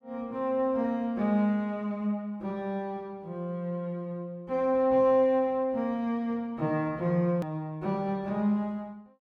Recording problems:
click at an edit; at 7.5 s

